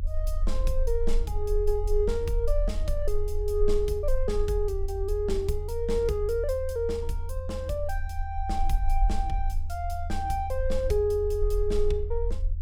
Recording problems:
rumble; below 46 Hz, strongest tone 22 Hz, SNR 2 dB

